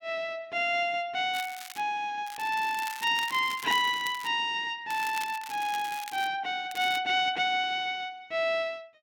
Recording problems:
crackling; 4 times, first at 1.5 s; loose cable, SNR 14 dB

